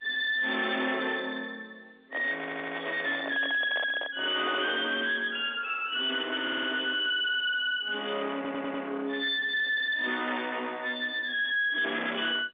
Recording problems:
telephone audio; 240 Hz to 3.7 kHz, G.711
distortion; soft clipping, signal-to-distortion ratio 7 dB
handling noise; from 2 to 5 s; peak -2 dB vs average level
audio stuttering; at 2.5 s, at 6.5 s and at 8.5 s

